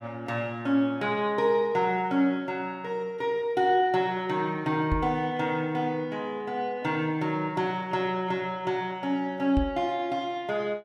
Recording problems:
microphone thump; at 5 s and at 9.5 s; peak +2 dB vs average level

